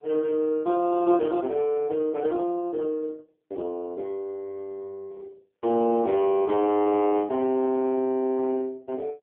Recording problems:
telephone audio; 240 Hz to 3.4 kHz, AMR-NB

